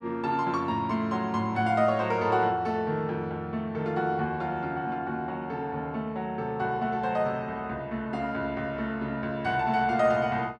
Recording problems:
none

